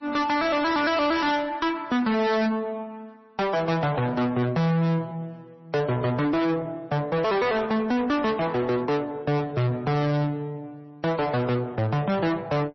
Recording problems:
codec artefacts; MP3, then MP3, log-spectral distance 2 dB, nothing above 5.7 kHz
distorted audio; soft clipping, signal-to-distortion ratio 6 dB

